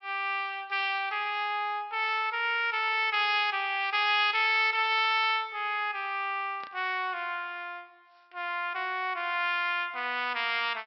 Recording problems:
treble cut off; nothing above 5.6 kHz
static burst; at 6.5 s; peak -15 dB vs average level

